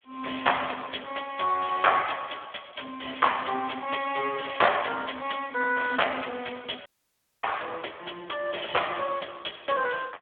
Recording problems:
phone line; 280 Hz to 3.5 kHz, Speex
audio cutting out; at 7 s for 0.5 s

